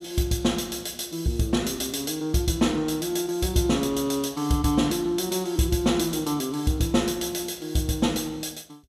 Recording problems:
none

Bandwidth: 15.5 kHz